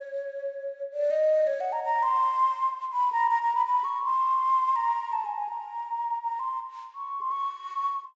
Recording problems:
low-pass filter; nothing above 7.7 kHz

